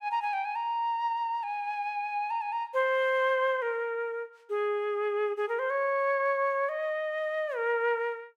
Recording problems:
none

